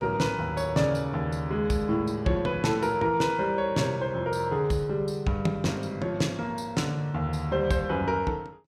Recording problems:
none

